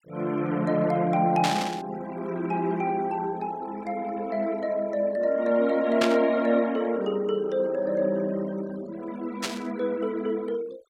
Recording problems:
denoising artefacts; signal-to-artefact ratio 22 dB
static burst; at 1.5 s, at 6 s and at 9.5 s; peak +3 dB vs average level

